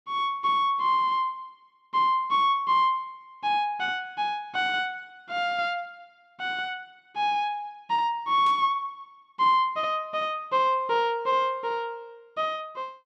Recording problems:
static burst; at 8.5 s; peak -14 dB vs average level

